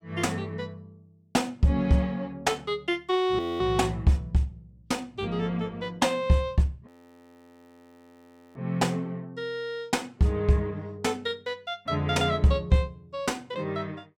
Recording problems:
audio freezing; at 3.5 s and at 7 s for 1.5 s

